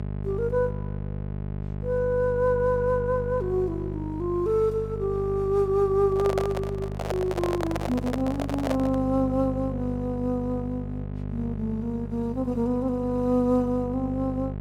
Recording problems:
hum; 50 Hz, harmonics up to 850 Hz, SNR 7 dB
microphone handling noise; from 6 to 9 s; peak +1 dB vs average level

